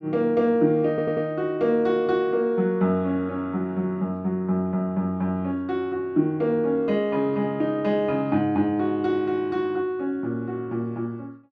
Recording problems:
audio stuttering; at 1 s

